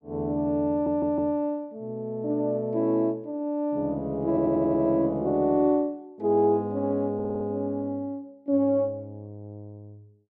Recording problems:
audio stuttering; at 0.5 s, at 4.5 s and at 7 s

